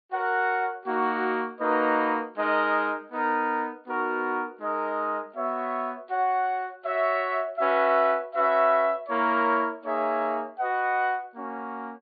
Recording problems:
low-pass filter; nothing above 4.8 kHz

